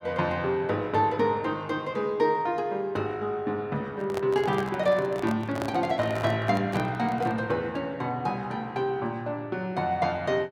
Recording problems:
handling noise; from 4 to 7.5 s; peak -2 dB vs average level

